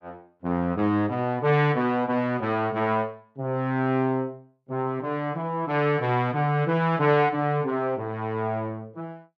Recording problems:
none

